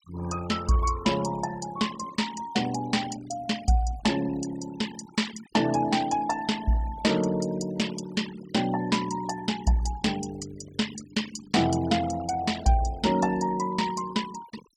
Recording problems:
noise reduction artefacts; signal-to-artefact ratio 16 dB

